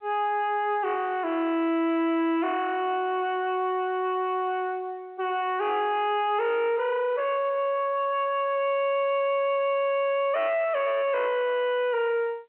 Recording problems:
phone line; 990 Hz to 3.3 kHz, G.711
distortion; hard clipping, uneven, signal-to-distortion ratio 7 dB

